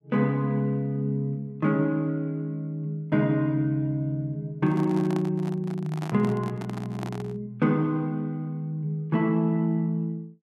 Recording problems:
microphone handling noise; from 4.5 to 7.5 s; peak -6 dB vs average level

